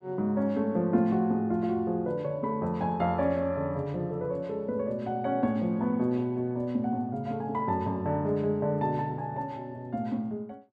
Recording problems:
none

